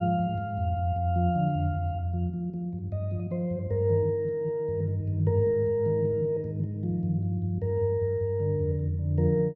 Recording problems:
none

